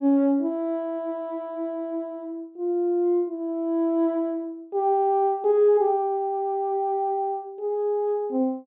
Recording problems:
low-pass filter; nothing above 4 kHz

